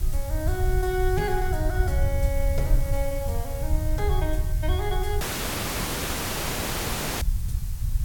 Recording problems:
background hiss; slope 0 dB per octave, SNR 12 dB
low-frequency rumble; below 76 Hz, SNR -2 dB
dropout; at 5 s for 2 s

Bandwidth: 17 kHz